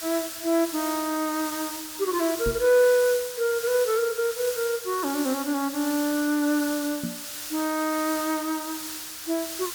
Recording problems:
background hiss; slope +2 dB per octave, SNR 8 dB
microphone thump; at 2.5 s and at 7 s; peak -2 dB vs average level

